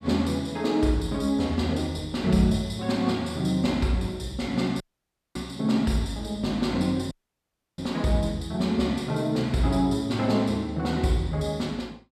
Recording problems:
audio cutting out; at 5 s for 0.5 s and at 7 s for 0.5 s

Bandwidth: 14.5 kHz